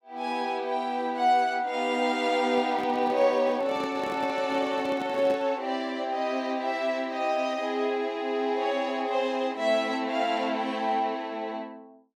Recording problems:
handling noise; from 2.5 to 5.5 s; peak -6 dB vs average level

